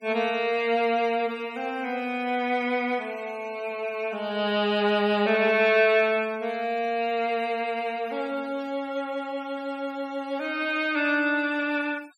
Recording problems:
denoising artefacts; signal-to-artefact ratio 25 dB

